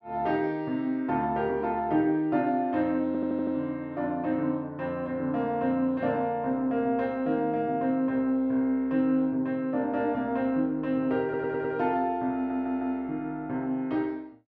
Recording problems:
audio stuttering; at 3 s, at 11 s and at 12 s

